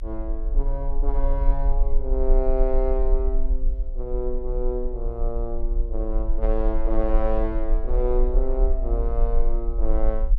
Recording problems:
low-frequency rumble; below 38 Hz, strongest tone 22 Hz, SNR -3 dB

